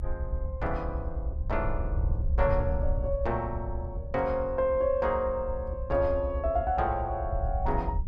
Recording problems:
low-frequency rumble; below 74 Hz, SNR 4 dB

